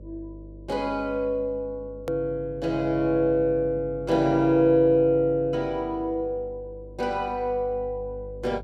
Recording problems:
mains hum; 50 Hz, harmonics up to 600 Hz, SNR 19 dB
hard cut with a click; at 2 s

